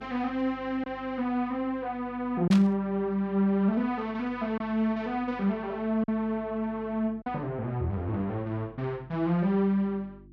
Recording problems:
electrical hum; 50 Hz, harmonics up to 350 Hz, SNR 24 dB
packet loss; 1.4% of the sound replaced, filled with silence
static burst; at 2.5 s; peak -1 dB vs average level

